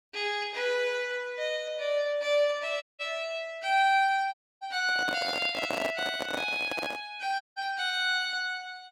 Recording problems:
dropout; at 3 s, at 4.5 s and at 7.5 s
handling noise; from 5 to 7 s; peak 0 dB vs average level

